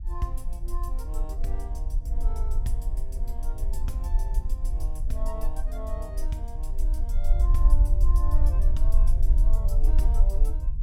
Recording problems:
rumble; below 46 Hz, strongest tone 20 Hz, SNR -12 dB

